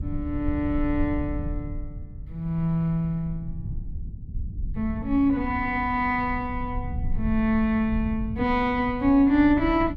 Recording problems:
low-frequency rumble; below 96 Hz, SNR 10 dB

